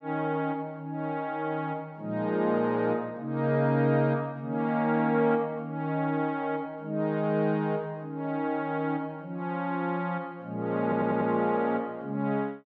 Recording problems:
audio stuttering; at 11 s

